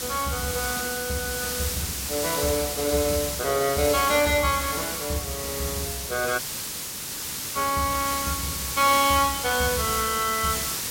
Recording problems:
hiss; SNR 3 dB
audio cutting out; at 6.5 s for 1 s

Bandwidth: 16.5 kHz